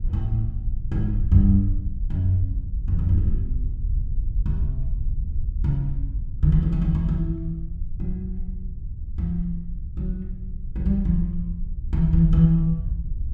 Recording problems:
low-frequency rumble; below 66 Hz, SNR 7 dB

